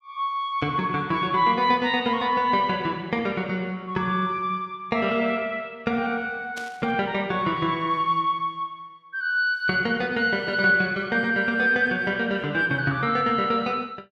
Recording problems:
static burst; at 6.5 s; peak -10 dB vs average level

